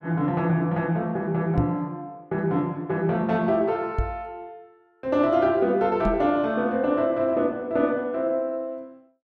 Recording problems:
knock on the microphone; at 1.5 s, at 4 s and at 6 s; peak +3 dB vs average level

